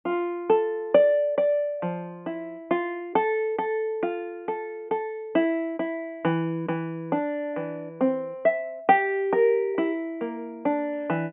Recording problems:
treble cut off; nothing above 3.2 kHz

